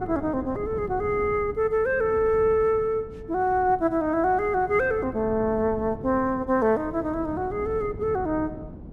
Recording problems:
wind noise; below 280 Hz, SNR 15 dB

